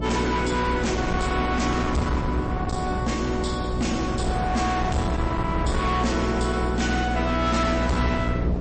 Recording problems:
codec artefacts; MP3, log-spectral distance 4 dB, nothing above 8.2 kHz
distortion; hard clipping, uneven, signal-to-distortion ratio 6 dB
hum; 60 Hz, harmonics up to 720 Hz, SNR 5 dB
wind noise; below 400 Hz, SNR 7 dB

